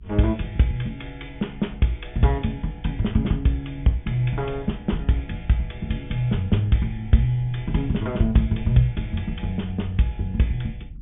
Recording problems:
treble missing; nothing above 3.6 kHz
rumble; below 82 Hz, SNR 16 dB

